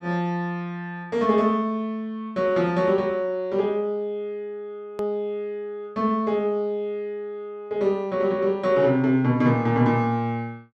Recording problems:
hard cut with a click; at 5 s

